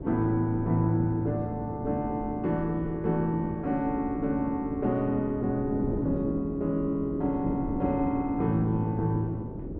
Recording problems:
wind on the microphone; below 350 Hz, SNR 7 dB

